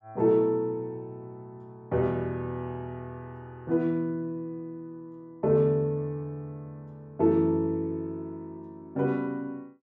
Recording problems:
none

